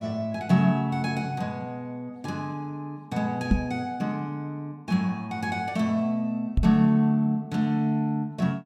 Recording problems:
knock on the microphone; at 3.5 s and at 6.5 s; peak +8 dB vs average level

